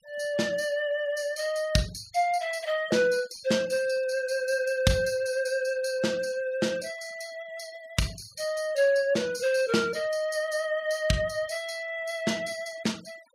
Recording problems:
noise reduction artefacts; signal-to-artefact ratio 23 dB

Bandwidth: 15.5 kHz